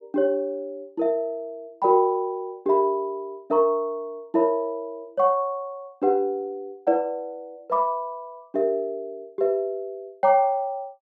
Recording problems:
none

